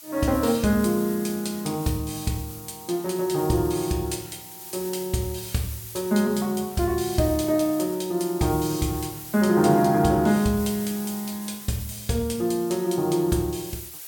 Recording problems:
background hiss; slope +2 dB per octave, SNR 14 dB

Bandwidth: 17 kHz